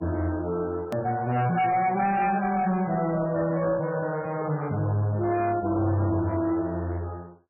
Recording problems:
lossy codec; MP3, log-spectral distance 2 dB, nothing above 17.1 kHz
distortion; hard clipping, signal-to-distortion ratio 11 dB
hard cut with a click; at 1 s

